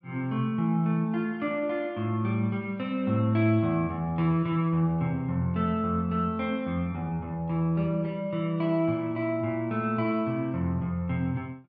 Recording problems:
none

